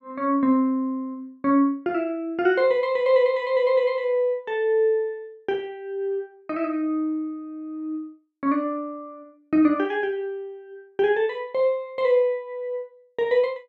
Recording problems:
none

